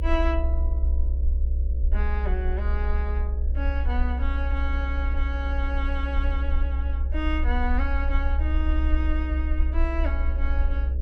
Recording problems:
hum; 60 Hz, harmonics up to 600 Hz, SNR 13 dB
rumble; below 66 Hz, SNR -7 dB

